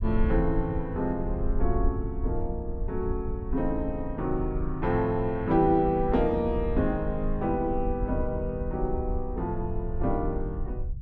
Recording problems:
low-frequency rumble; below 66 Hz, SNR 6 dB

